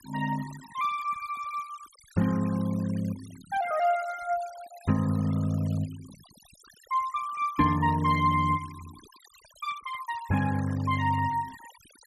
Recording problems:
denoising artefacts; signal-to-artefact ratio 19 dB

